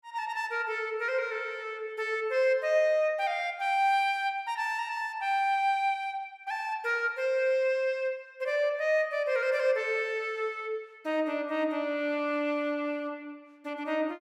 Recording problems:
none

